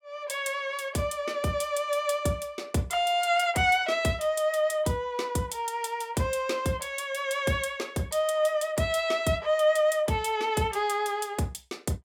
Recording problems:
none

